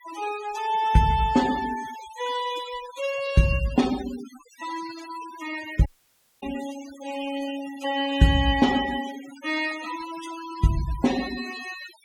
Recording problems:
denoising artefacts; signal-to-artefact ratio 14 dB
audio cutting out; at 6 s for 0.5 s

